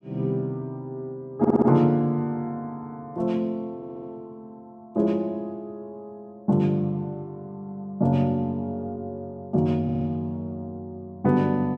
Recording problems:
stutter; at 1.5 s, at 4 s and at 10 s

